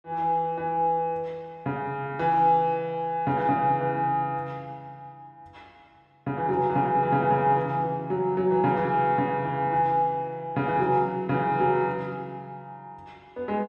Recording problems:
none

